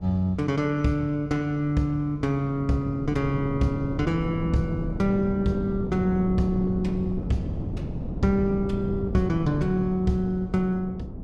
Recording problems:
wind on the microphone; below 250 Hz, SNR 7 dB

